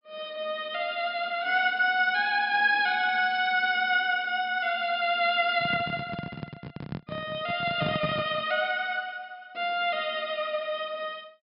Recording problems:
low-pass filter; nothing above 5.5 kHz
handling noise; from 5.5 to 8.5 s; peak -1 dB vs average level

